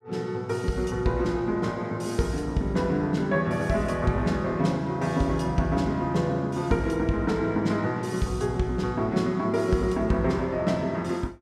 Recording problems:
none

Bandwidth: 14.5 kHz